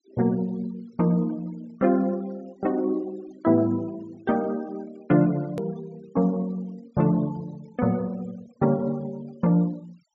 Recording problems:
treble cut off; nothing above 8 kHz
noise reduction artefacts; signal-to-artefact ratio 27 dB
hard cut with a click; at 5.5 s

